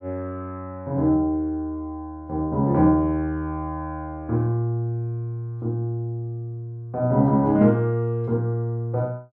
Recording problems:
none

